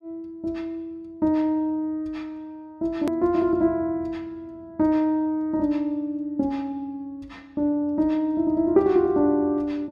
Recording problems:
click at an edit; at 3 s

